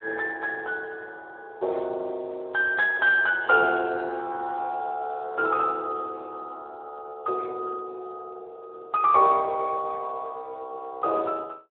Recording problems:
telephone audio; 340 Hz to 2.8 kHz, Speex

